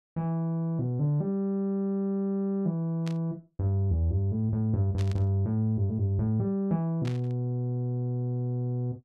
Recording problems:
burst of static; at 3 s, at 5 s and at 7 s; peak -10 dB vs average level

